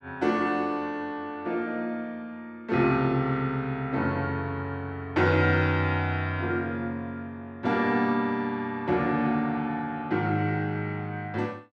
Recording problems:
none

